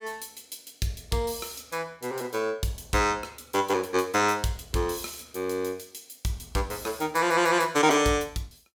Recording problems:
none

